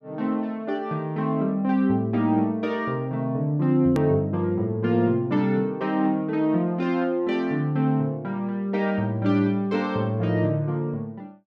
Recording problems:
hard cut with a click; at 4 s

